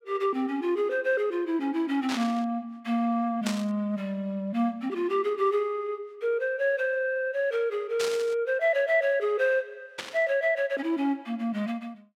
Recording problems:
burst of static; 4 times, first at 2 s; peak -2 dB vs average level

